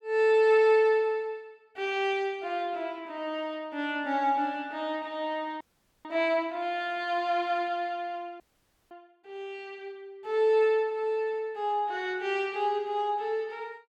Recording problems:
audio freezing; at 5.5 s and at 8.5 s for 0.5 s

